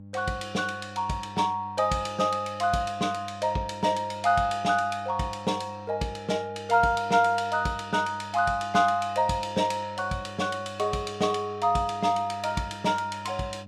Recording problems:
mains hum; 50 Hz, harmonics up to 600 Hz, SNR 18 dB

